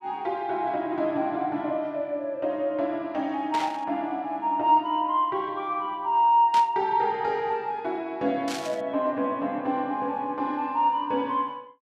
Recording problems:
burst of static; at 3.5 s, at 6.5 s and at 8.5 s; peak -4 dB vs average level

